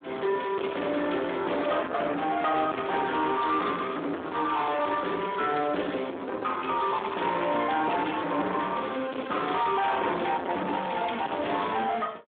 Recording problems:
telephone audio; 240 Hz to 3.6 kHz, Speex
distorted audio; soft clipping, signal-to-distortion ratio 7 dB

